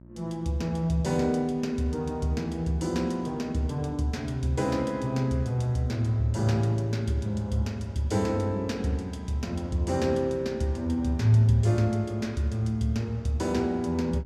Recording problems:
electrical hum; 60 Hz, harmonics up to 660 Hz, SNR 21 dB

